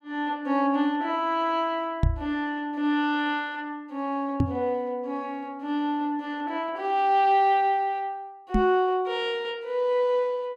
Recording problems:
microphone thump; at 2 s, at 4.5 s and at 8.5 s; peak +6 dB vs average level

